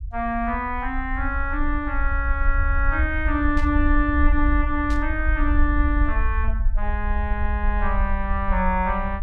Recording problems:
low-frequency rumble; below 60 Hz, SNR 0 dB
burst of static; at 3.5 s and at 5 s; peak -12 dB vs average level

